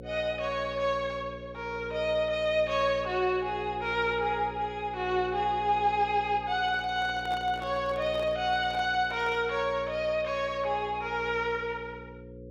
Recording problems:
hum; 60 Hz, harmonics up to 540 Hz, SNR 15 dB
microphone handling noise; from 6.5 to 9.5 s; peak -10 dB vs average level

